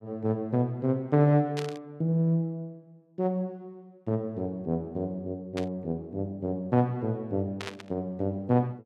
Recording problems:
burst of static; at 1.5 s, at 5.5 s and at 7.5 s; peak -3 dB vs average level

